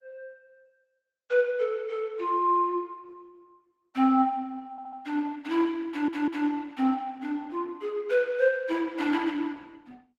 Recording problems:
lossy compression; Opus, log-spectral distance 2 dB, nothing above 18.9 kHz
stutter; at 4.5 s and at 6 s

